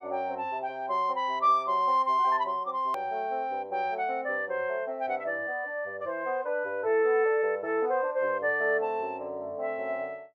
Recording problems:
hard cut with a click; at 3 s

